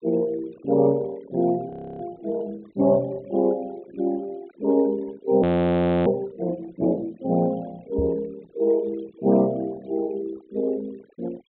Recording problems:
low-pass filter; nothing above 4 kHz
noise reduction artefacts; signal-to-artefact ratio 24 dB
audio freezing; at 1.5 s and at 5.5 s for 0.5 s
knock on the microphone; at 8 s; peak -2 dB vs average level

